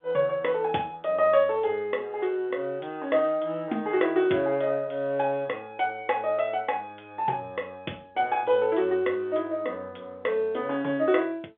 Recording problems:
phone line; 240 Hz to 3.8 kHz, G.711

